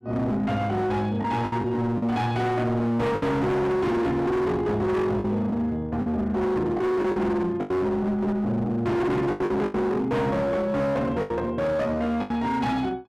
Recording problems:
distortion; hard clipping, signal-to-distortion ratio 7 dB
packet loss; 6% of the sound replaced, filled with the last packet

